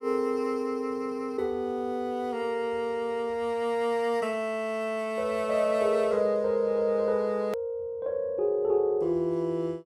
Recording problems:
hard cut with a click; at 7.5 s

